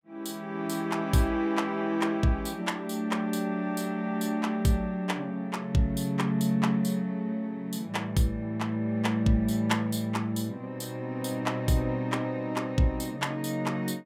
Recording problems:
none

